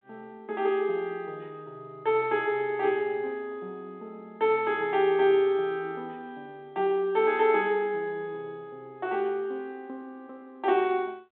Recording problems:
phone line; 240 Hz to 3.6 kHz, G.726

